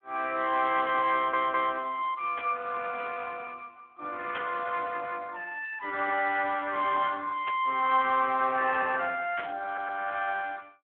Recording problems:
phone line; 240 Hz to 3.5 kHz, Speex
audio stuttering; at 1 s and at 9.5 s
static burst; 4 times, first at 2.5 s; peak -5 dB vs average level

